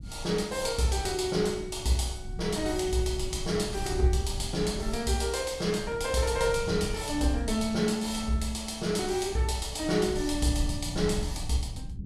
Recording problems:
rumble; below 110 Hz, SNR 11 dB

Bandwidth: 14.5 kHz